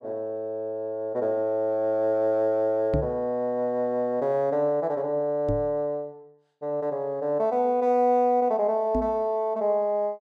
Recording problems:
microphone bump; at 3 s, at 5.5 s and at 9 s; peak +2 dB vs average level

